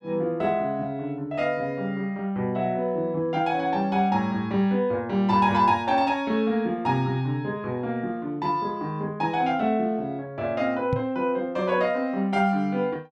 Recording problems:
microphone bump; at 11 s; peak +2 dB vs average level

